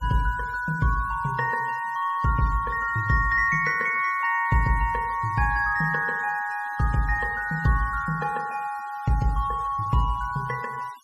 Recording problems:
denoising artefacts; signal-to-artefact ratio 24 dB

